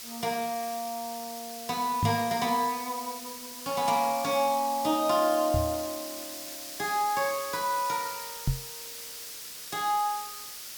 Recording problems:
background hiss; slope +2 dB per octave, SNR 9 dB
microphone thump; at 2 s, at 5.5 s and at 8.5 s; peak +4 dB vs average level

